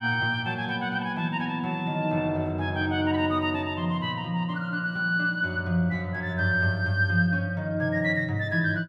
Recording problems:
none

